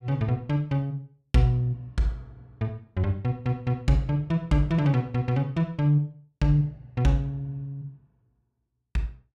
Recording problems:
none

